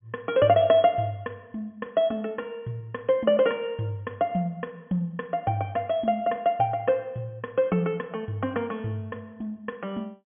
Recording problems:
treble missing; nothing above 3.4 kHz

